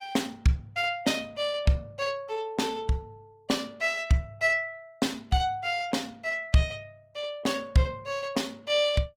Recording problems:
lossy codec; Opus, log-spectral distance 2 dB, nothing above 19 kHz

